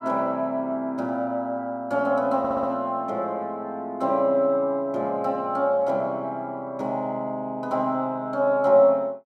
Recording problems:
audio stuttering; at 2.5 s

